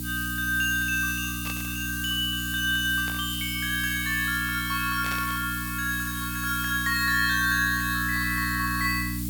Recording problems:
mains hum; 60 Hz, harmonics up to 300 Hz, SNR 9 dB
hiss; slope +4 dB per octave, SNR 8 dB
burst of static; at 1.5 s, at 3 s and at 5 s; peak -6 dB vs average level

